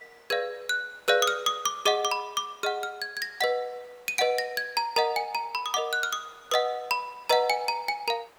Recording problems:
hiss; SNR 29 dB

